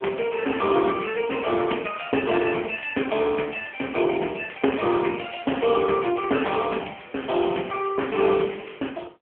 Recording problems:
telephone audio; 220 Hz to 3.3 kHz, AMR-NB

